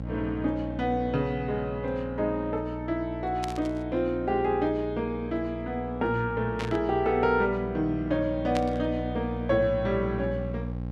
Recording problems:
hum; 60 Hz, harmonics up to 840 Hz, SNR 9 dB
static burst; at 3.5 s, at 6.5 s and at 8.5 s; peak -3 dB vs average level

